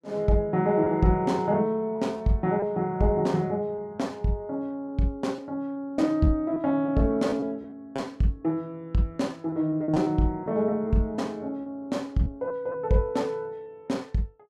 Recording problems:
lost packets; 5% of the sound replaced, filled with repeated pitch periods

